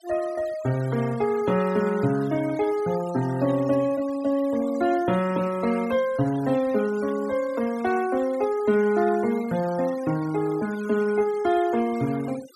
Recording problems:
denoising artefacts; signal-to-artefact ratio 18 dB

